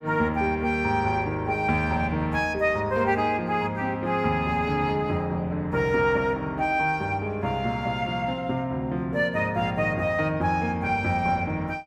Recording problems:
none

